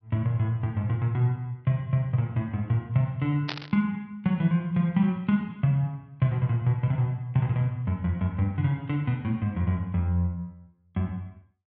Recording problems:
treble missing; nothing above 5.5 kHz
static burst; at 3.5 s; peak -1 dB vs average level

